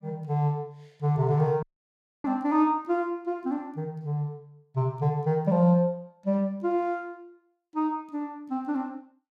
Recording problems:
audio cutting out; at 1.5 s for 0.5 s

